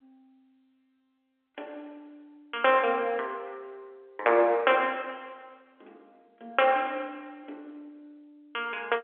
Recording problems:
phone line; 320 Hz to 3.5 kHz, G.711

